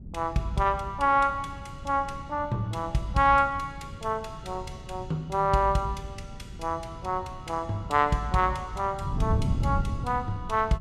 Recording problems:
wind noise; below 160 Hz, SNR 9 dB

